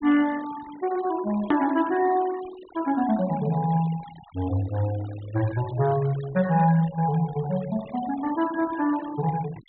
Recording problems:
treble missing; nothing above 4 kHz
noise reduction artefacts; signal-to-artefact ratio 18 dB
edit click; at 1.5 s

